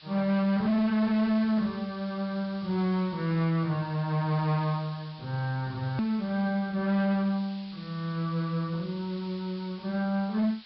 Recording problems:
treble missing; nothing above 5.1 kHz
distortion; hard clipping, signal-to-distortion ratio 11 dB
hiss; SNR 20 dB
hard cut with a click; at 6 s

